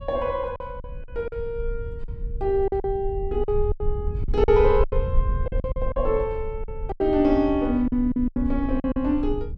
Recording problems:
low-frequency rumble; below 66 Hz, SNR 7 dB
packet loss; 12% of the sound replaced, filled with silence

